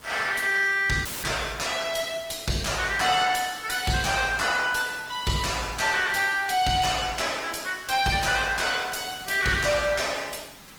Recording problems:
codec artefacts; Opus, log-spectral distance 6 dB
distortion; soft clipping, signal-to-distortion ratio 11 dB
hiss; slope -2 dB per octave, SNR 22 dB
audio cutting out; at 1 s; filled with static

